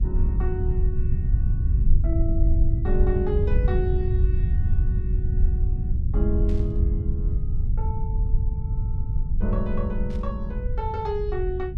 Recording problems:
rumble; below 80 Hz, SNR -6 dB
static burst; at 6.5 s and at 10 s; peak -14 dB vs average level

